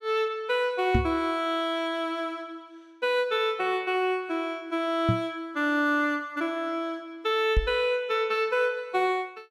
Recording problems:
microphone bump; at 1 s, at 5 s and at 7.5 s; peak +6 dB vs average level

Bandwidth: 14.5 kHz